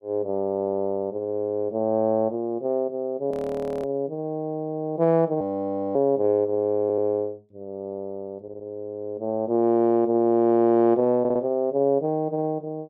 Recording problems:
audio freezing; at 3.5 s for 0.5 s and at 5.5 s for 0.5 s
stutter; at 7 s, at 8.5 s and at 11 s

